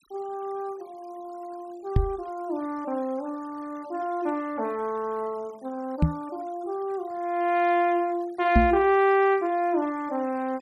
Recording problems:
denoising artefacts; signal-to-artefact ratio 27 dB
knock on the microphone; at 2 s, at 6 s and at 8.5 s; peak +9 dB vs average level

